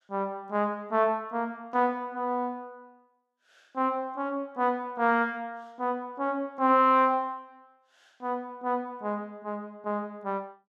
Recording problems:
none

